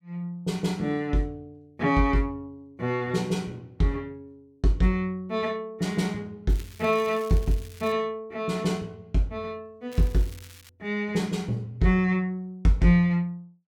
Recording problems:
crackle; from 6.5 to 8 s and at 10 s; loose cable, SNR 22 dB

